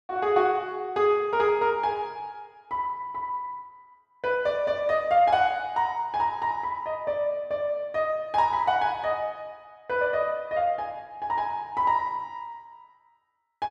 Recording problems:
none

